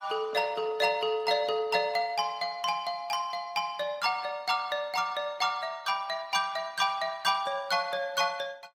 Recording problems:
lossy compression; AAC, then Opus, log-spectral distance 3 dB

